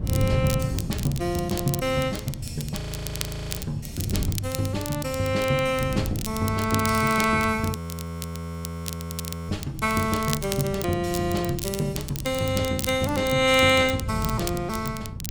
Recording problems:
wind on the microphone; below 170 Hz, SNR 8 dB
crackling; vinyl, SNR 10 dB
frozen audio; at 3 s for 1 s and at 8 s for 1.5 s

